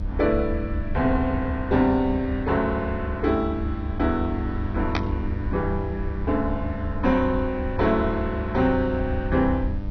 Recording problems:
lossy compression; MP2, log-spectral distance 2 dB, nothing above 6 kHz
hum; 50 Hz, harmonics up to 1.2 kHz, SNR 10 dB
rumble; below 76 Hz, SNR 7 dB
burst of static; at 5 s; peak +2 dB vs average level

